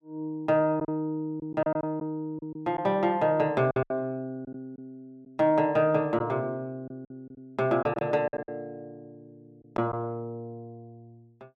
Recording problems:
packet loss; 7% of the sound replaced, filled with silence

